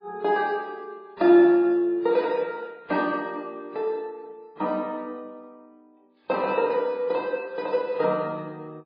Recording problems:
codec artefacts; MP3, then AAC, log-spectral distance 2 dB

